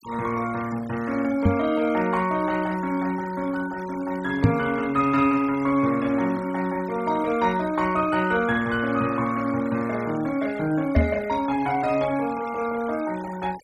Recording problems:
noise reduction artefacts; signal-to-artefact ratio 18 dB
microphone bump; at 1.5 s, at 4.5 s and at 11 s; peak +9 dB vs average level

